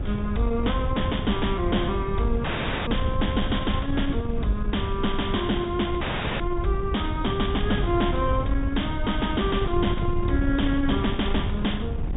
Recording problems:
treble missing; nothing above 4 kHz
distortion; soft clipping, signal-to-distortion ratio 11 dB
wind on the microphone; below 110 Hz, SNR 3 dB
audio cutting out; at 2.5 s and at 6 s

